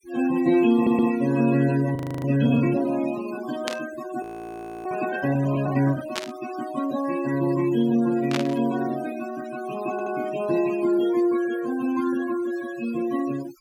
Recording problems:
denoising artefacts; signal-to-artefact ratio 16 dB
stutter; at 1 s and at 10 s
audio freezing; at 2 s and at 4 s for 0.5 s
burst of static; at 3.5 s, at 6 s and at 8.5 s; peak 0 dB vs average level

